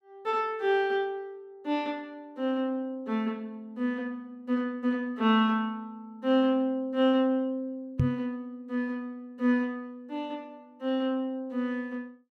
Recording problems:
knock on the microphone; at 8 s; peak +7 dB vs average level

